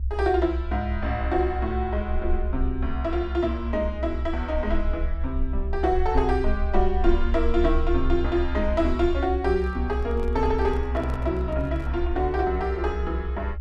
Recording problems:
rumble; below 68 Hz, SNR 3 dB
handling noise; from 9.5 to 12 s; peak -10 dB vs average level

